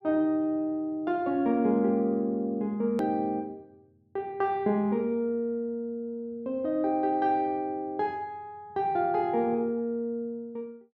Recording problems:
hard cut with a click; at 3 s

